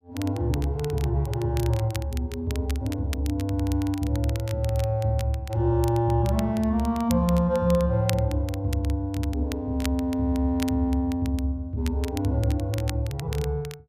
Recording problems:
crackle; vinyl, SNR 17 dB

